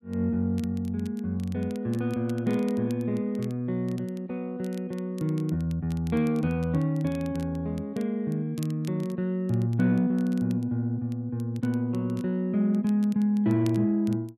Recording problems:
crackling; vinyl, SNR 26 dB

